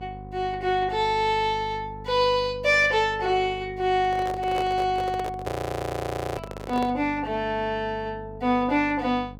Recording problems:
electrical hum; 50 Hz, harmonics up to 1 kHz, SNR 17 dB
microphone handling noise; from 4 to 7 s; peak -3 dB vs average level
audio freezing; at 5.5 s for 1 s

